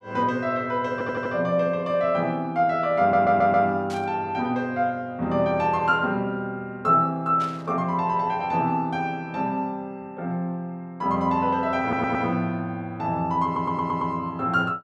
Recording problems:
audio stuttering; 4 times, first at 1 s
burst of static; at 4 s and at 7.5 s; peak -12 dB vs average level

